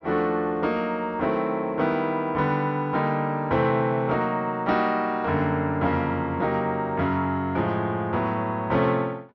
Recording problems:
treble cut off; nothing above 6.6 kHz

